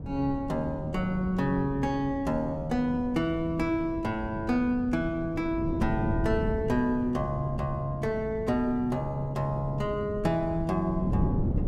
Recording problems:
wind noise; below 220 Hz, SNR 7 dB

